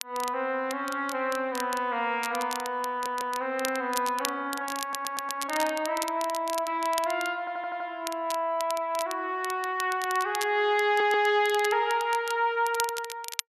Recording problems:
crackling; vinyl, SNR 11 dB
stutter; 4 times, first at 3 s

